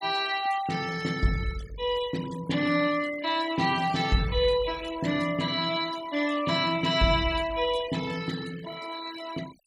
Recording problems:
denoising artefacts; signal-to-artefact ratio 16 dB

